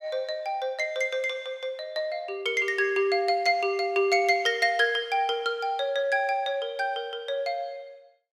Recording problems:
none

